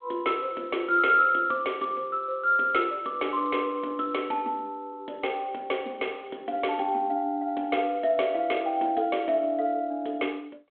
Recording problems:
phone line; 240 Hz to 3.4 kHz, G.726

